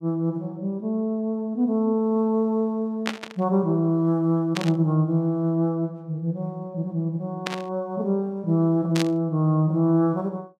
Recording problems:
burst of static; 4 times, first at 3 s; peak +1 dB vs average level

